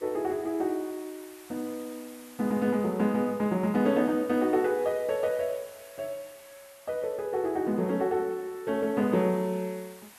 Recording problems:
background hiss; SNR 22 dB

